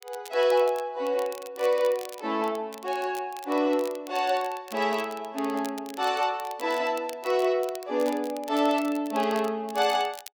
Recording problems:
crackling; vinyl, SNR 19 dB

